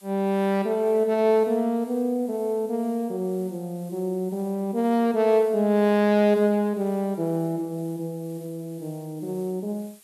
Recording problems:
hiss; slope +1 dB per octave, SNR 27 dB

